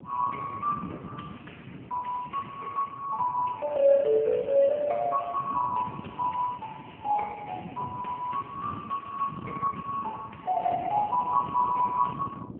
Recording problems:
telephone audio; 220 Hz to 3.2 kHz, AMR-NB
wind noise; below 310 Hz, SNR 14 dB

